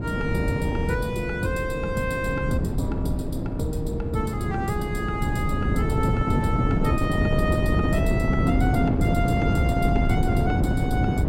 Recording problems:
wind on the microphone; below 250 Hz, SNR -3 dB

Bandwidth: 16 kHz